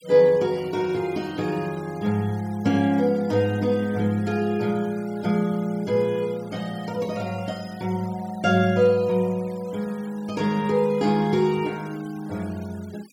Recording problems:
denoising artefacts; signal-to-artefact ratio 23 dB

